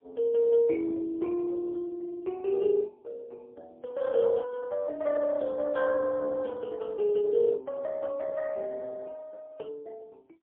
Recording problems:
telephone audio; 260 Hz to 2.8 kHz, AMR-NB, then MP3

